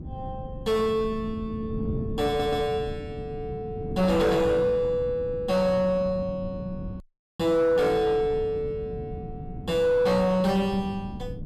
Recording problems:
distortion; soft clipping, signal-to-distortion ratio 12 dB
wind noise; below 210 Hz, SNR 12 dB
stutter; at 2.5 s
audio cutting out; at 7 s

